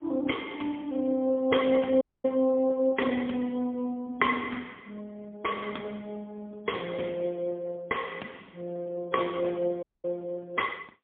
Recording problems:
telephone audio; 220 Hz to 3.3 kHz, AMR-NB, then MP3
audio cutting out; at 2 s and at 10 s

